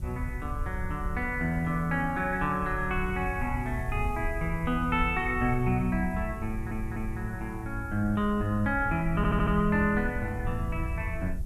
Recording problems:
background hiss; slope +3 dB per octave, SNR 29 dB
wind on the microphone; below 84 Hz, SNR 7 dB
stutter; at 6.5 s and at 9 s

